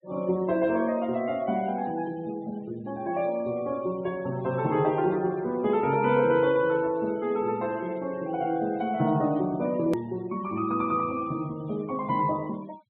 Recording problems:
low-pass filter; nothing above 4 kHz
noise reduction artefacts; signal-to-artefact ratio 23 dB
hard cut with a click; at 10 s

